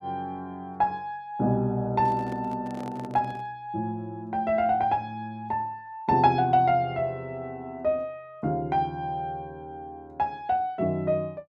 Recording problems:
microphone handling noise; from 2 to 3.5 s; peak -10 dB vs average level

